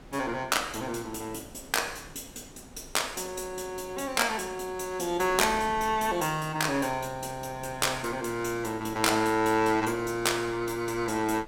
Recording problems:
wind noise; below 630 Hz, SNR 20 dB

